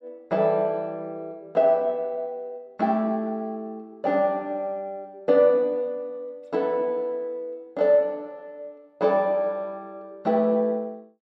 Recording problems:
none

